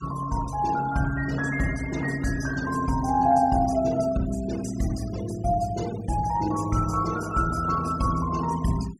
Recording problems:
denoising artefacts; signal-to-artefact ratio 17 dB

